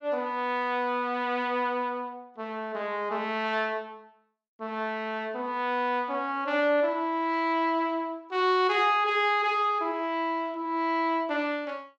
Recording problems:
none

